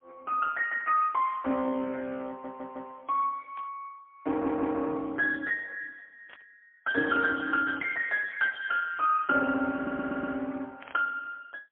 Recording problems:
telephone audio; 220 Hz to 3.1 kHz, AMR-NB, then MP3
static burst; 4 times, first at 1.5 s; peak -14 dB vs average level
audio stuttering; at 2.5 s, at 4.5 s and at 10 s

